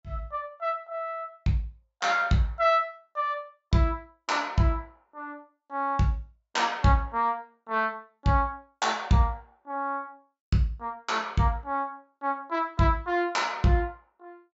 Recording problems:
treble cut off; nothing above 8 kHz

